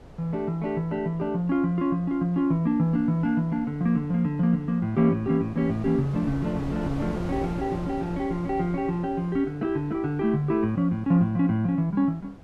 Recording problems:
wind noise; below 490 Hz, SNR 16 dB

